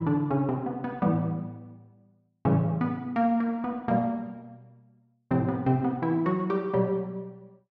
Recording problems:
none

